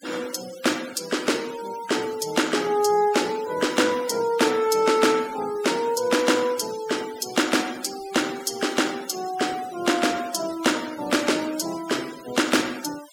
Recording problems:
denoising artefacts; signal-to-artefact ratio 16 dB

